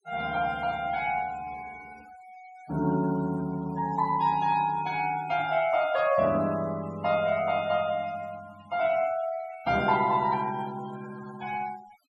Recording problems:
denoising artefacts; signal-to-artefact ratio 20 dB

